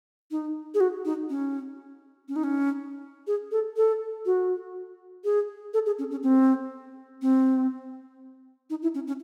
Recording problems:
none

